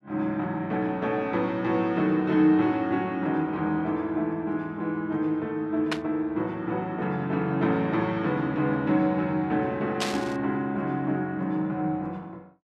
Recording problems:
static burst; at 6 s and at 10 s; peak +2 dB vs average level

